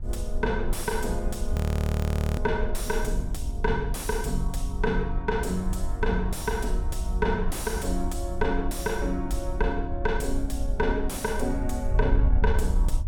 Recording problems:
distortion; soft clipping, signal-to-distortion ratio 12 dB
wind on the microphone; below 70 Hz, SNR 1 dB
frozen audio; at 1.5 s for 1 s

